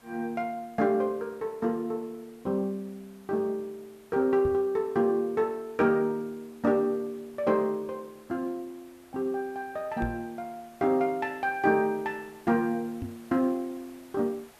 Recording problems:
background hiss; SNR 27 dB
microphone bump; at 4.5 s, at 10 s and at 13 s; peak -2 dB vs average level

